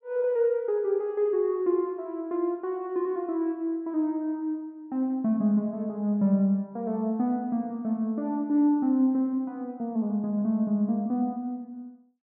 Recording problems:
none

